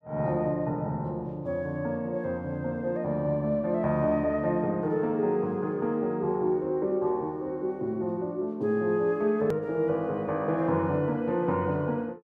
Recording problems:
edit click; at 9.5 s

